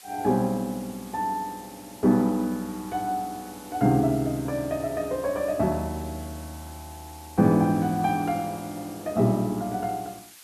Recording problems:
background hiss; slope +2 dB per octave, SNR 20 dB

